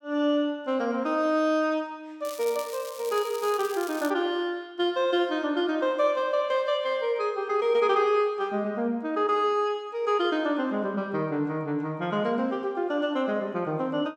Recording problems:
crackling; from 2.5 to 4 s; loose cable, SNR 15 dB

